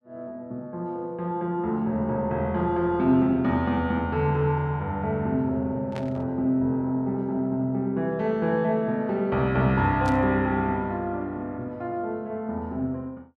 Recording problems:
static burst; at 6 s and at 10 s; peak -10 dB vs average level

